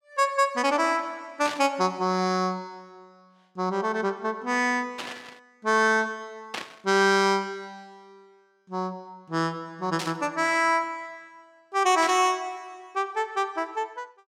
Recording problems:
static burst; 5 times, first at 1.5 s; peak -3 dB vs average level

